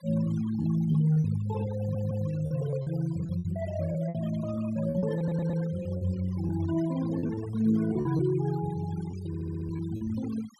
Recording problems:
noise reduction artefacts; signal-to-artefact ratio 16 dB
lost packets; 9% of the sound replaced, filled with repeated pitch periods
audio stuttering; at 2 s, at 5 s and at 9.5 s

